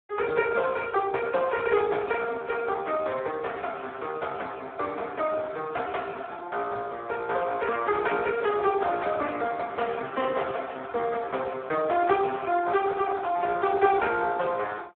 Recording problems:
phone line; 300 Hz to 3.5 kHz, Speex

